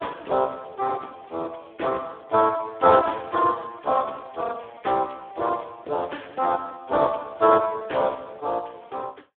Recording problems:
telephone audio; 300 Hz to 2.2 kHz, Speex

